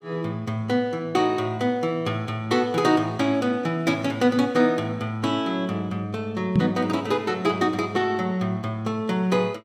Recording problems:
microphone thump; at 6.5 s; peak +6 dB vs average level

